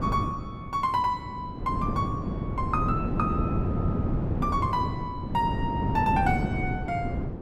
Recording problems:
wind on the microphone; below 280 Hz, SNR 0 dB

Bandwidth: 16.5 kHz